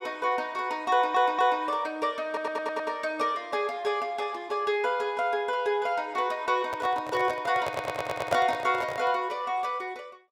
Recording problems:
stutter; at 1 s, at 2.5 s and at 7.5 s
handling noise; from 6.5 to 9 s; peak +4 dB vs average level

